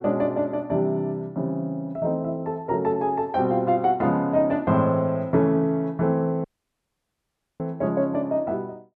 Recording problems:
audio cutting out; at 6.5 s for 1 s

